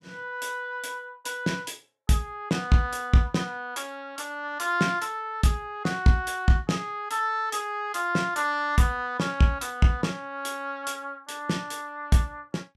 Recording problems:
none

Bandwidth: 14.5 kHz